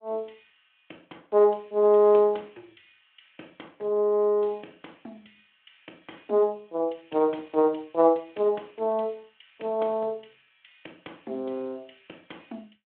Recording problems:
phone line; 280 Hz to 3.6 kHz, Speex

